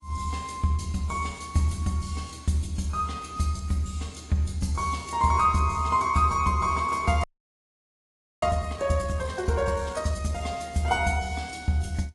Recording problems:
lossy compression; AAC, log-spectral distance 4 dB, nothing above 10.7 kHz
audio freezing; at 7 s for 1 s

